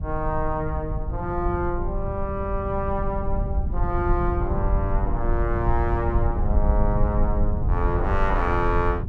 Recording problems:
rumble; below 80 Hz, SNR 1 dB
wind noise; below 82 Hz, SNR 8 dB

